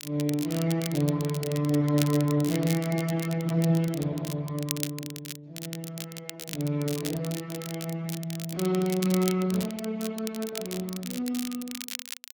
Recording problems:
lossy compression; Speex, log-spectral distance 2 dB, nothing above 16 kHz
crackling; vinyl, SNR 10 dB

